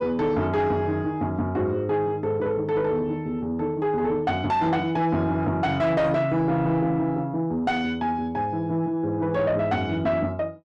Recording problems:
distortion; soft clipping, signal-to-distortion ratio 10 dB

